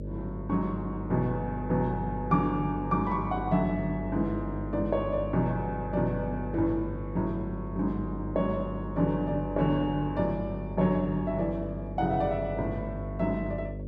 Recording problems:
hum; 50 Hz, harmonics up to 600 Hz, SNR 7 dB

